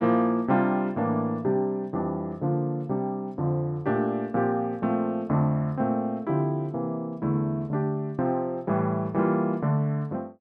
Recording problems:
none

